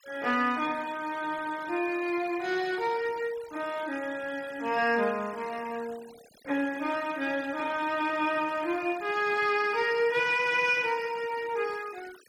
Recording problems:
denoising artefacts; signal-to-artefact ratio 20 dB

